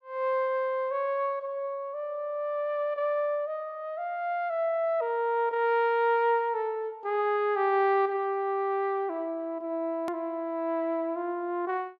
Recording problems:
hard cut with a click; at 10 s

